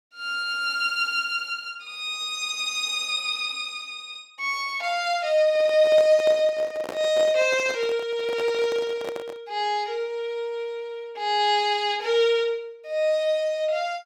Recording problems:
microphone handling noise; from 5.5 to 9.5 s; peak -5 dB vs average level

